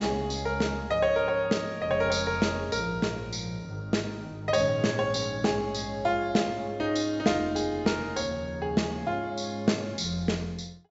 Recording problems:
treble missing; nothing above 8 kHz

